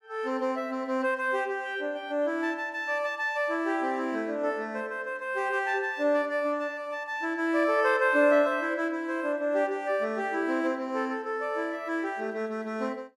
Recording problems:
none

